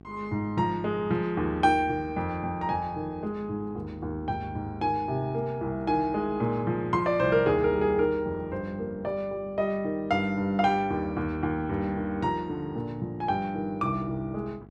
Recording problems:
electrical hum; 50 Hz, harmonics up to 1.2 kHz, SNR 22 dB

